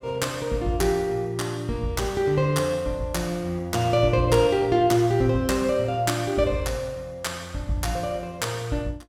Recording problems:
none

